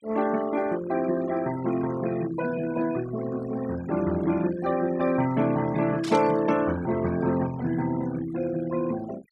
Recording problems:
noise reduction artefacts; signal-to-artefact ratio 15 dB
burst of static; at 6 s; peak -7 dB vs average level

